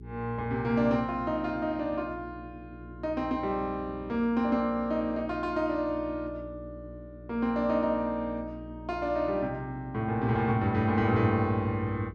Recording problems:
hum; 60 Hz, harmonics up to 420 Hz, SNR 17 dB

